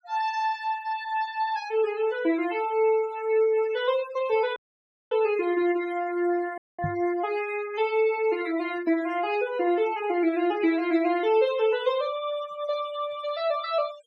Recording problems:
noise reduction artefacts; signal-to-artefact ratio 17 dB
audio cutting out; at 4.5 s for 0.5 s and at 6.5 s
microphone bump; at 7 s; peak -1 dB vs average level

